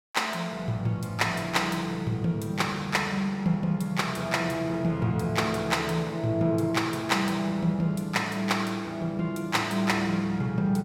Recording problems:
none

